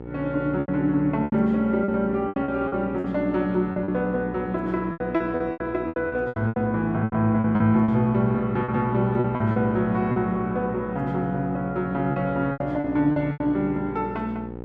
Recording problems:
hum; 60 Hz, harmonics up to 1.4 kHz, SNR 13 dB
lost packets; 12% of the sound replaced, filled with repeated pitch periods

